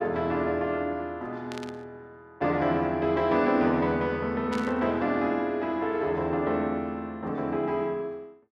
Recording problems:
static burst; at 1.5 s and at 4.5 s; peak -8 dB vs average level

